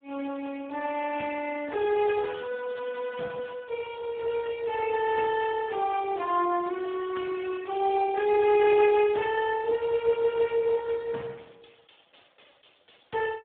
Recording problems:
phone line; 240 Hz to 2.3 kHz, Speex

